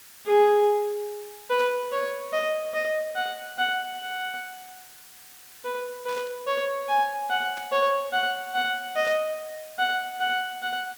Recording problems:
background hiss; SNR 19 dB
static burst; 4 times, first at 1.5 s; peak -12 dB vs average level

